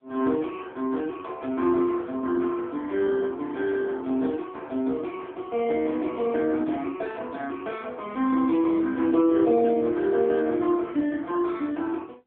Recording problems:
phone line; 240 Hz to 3.5 kHz, AMR-NB

